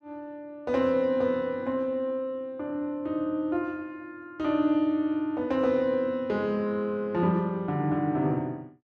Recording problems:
none

